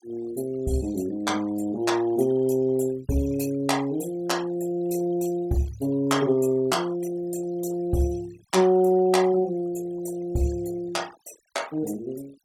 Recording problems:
denoising artefacts; signal-to-artefact ratio 21 dB

